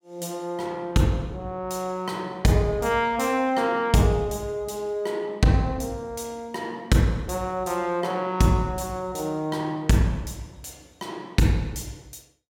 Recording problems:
none

